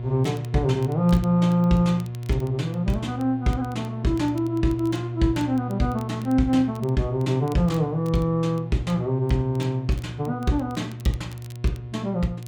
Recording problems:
electrical hum; 60 Hz, harmonics up to 720 Hz, SNR 9 dB
crackling; vinyl, SNR 27 dB

